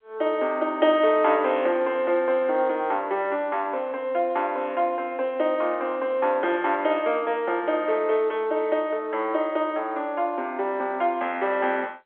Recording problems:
telephone audio; 340 Hz to 3.9 kHz, G.711

